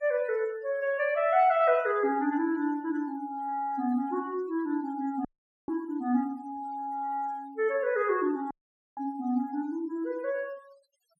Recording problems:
denoising artefacts; signal-to-artefact ratio 28 dB
dropout; at 5.5 s and at 8.5 s

